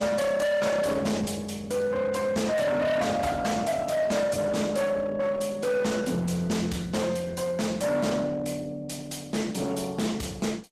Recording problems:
codec artefacts; Opus, log-spectral distance 4 dB, nothing above 14.3 kHz
distorted audio; hard clipping, signal-to-distortion ratio 7 dB

